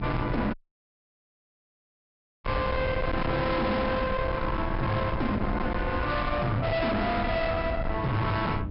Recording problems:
low-pass filter; nothing above 5.3 kHz
distortion; hard clipping, uneven, signal-to-distortion ratio 5 dB
hum; 50 Hz, harmonics up to 1.2 kHz, SNR 14 dB
low-frequency rumble; below 500 Hz, SNR 5 dB
dropout; at 0.5 s for 2 s

